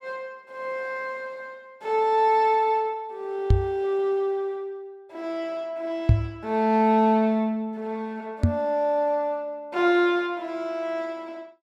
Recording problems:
microphone thump; at 3.5 s, at 6 s and at 8.5 s; peak +10 dB vs average level

